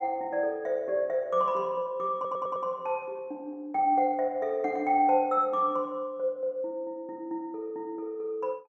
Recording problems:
stutter; at 2 s

